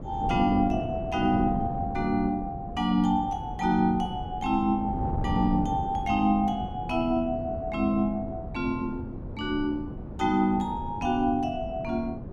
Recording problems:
wind noise; below 270 Hz, SNR 9 dB

